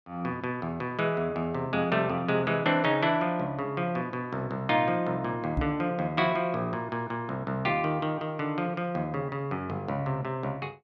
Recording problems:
microphone bump; at 5.5 s; peak +3 dB vs average level

